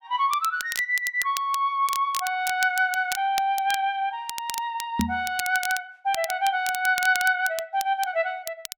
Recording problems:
crackling; vinyl, SNR 11 dB
microphone thump; at 5 s; peak +3 dB vs average level

